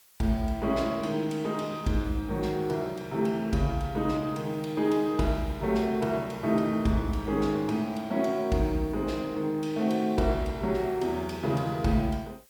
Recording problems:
hiss; slope +1 dB per octave, SNR 28 dB

